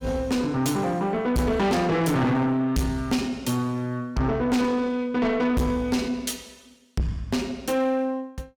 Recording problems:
distorted audio; soft clipping, signal-to-distortion ratio 7 dB

